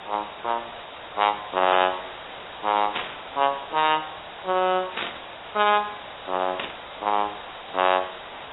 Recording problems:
codec artefacts; AAC, log-spectral distance 28 dB, nothing above 3.8 kHz
background hiss; SNR 14 dB
static burst; at 3 s, at 5 s and at 6.5 s; peak 0 dB vs average level

